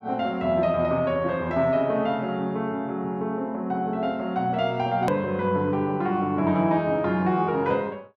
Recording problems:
click at an edit; at 5 s

